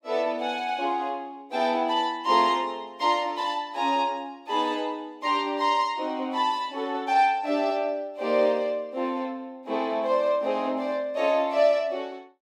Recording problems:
none

